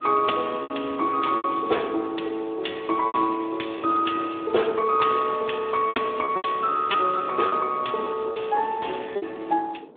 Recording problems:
phone line; 280 Hz to 3.5 kHz, Speex
wind on the microphone; below 590 Hz, SNR 20 dB
packet loss; 7% of the sound replaced, filled with repeated pitch periods

